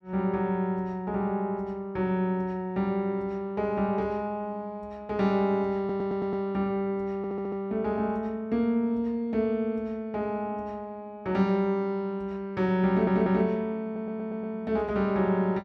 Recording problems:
stutter; 4 times, first at 6 s

